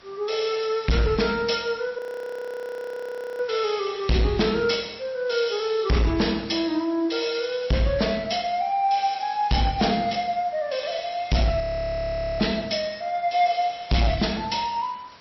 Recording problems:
codec artefacts; MP3, log-spectral distance 6 dB, nothing above 5.7 kHz
distorted audio; hard clipping, signal-to-distortion ratio 7 dB
background hiss; slope -2 dB per octave, SNR 25 dB
audio freezing; at 2 s for 1.5 s and at 12 s for 1 s

